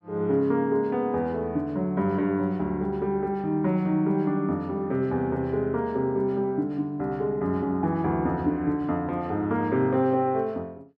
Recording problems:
none

